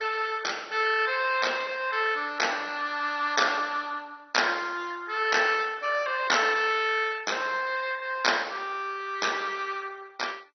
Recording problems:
codec artefacts; MP2, log-spectral distance 6 dB, nothing above 6 kHz

